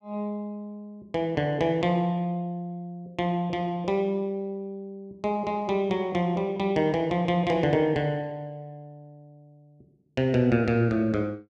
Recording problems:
none

